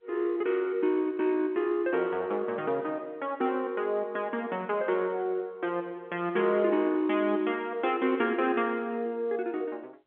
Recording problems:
telephone audio; 240 Hz to 3.5 kHz, G.711

